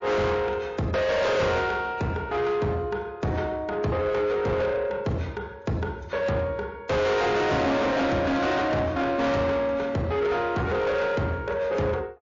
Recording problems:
codec artefacts; MP3, log-spectral distance 2 dB, nothing above 6.2 kHz
distorted audio; soft clipping, signal-to-distortion ratio 6 dB

